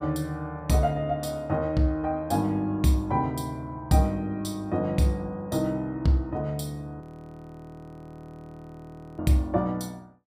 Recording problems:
frozen audio; at 7 s for 2 s

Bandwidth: 15.5 kHz